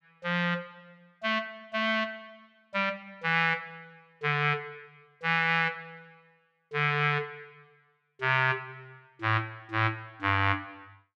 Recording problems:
none

